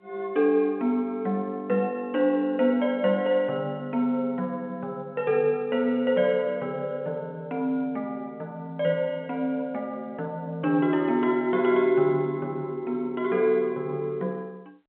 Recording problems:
phone line; 190 Hz to 3.5 kHz, G.711

